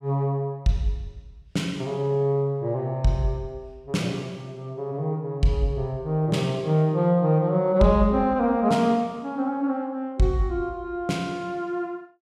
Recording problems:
none

